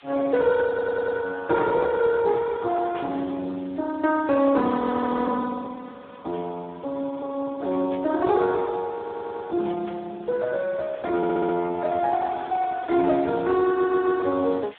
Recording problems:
phone line; 240 Hz to 2 kHz, Speex
hiss; SNR 27 dB
audio stuttering; 4 times, first at 0.5 s
static burst; at 3 s, at 8 s and at 10 s; peak -12 dB vs average level
audio freezing; at 5 s for 0.5 s

